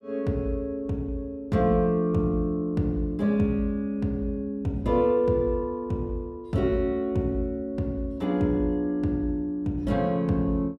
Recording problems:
none

